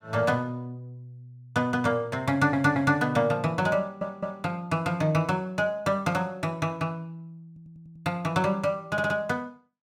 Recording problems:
audio stuttering; 4 times, first at 2.5 s

